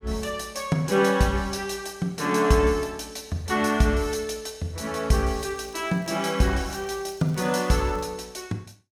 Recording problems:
crackle; from 5 to 8 s; loose cable, SNR 28 dB

